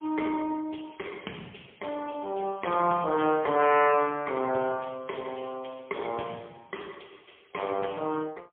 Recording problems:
phone line; 220 Hz to 3.2 kHz, AMR-NB, then MP3

